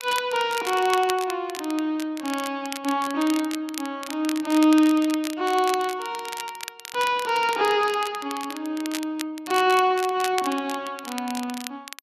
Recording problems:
crackling; vinyl, SNR 12 dB

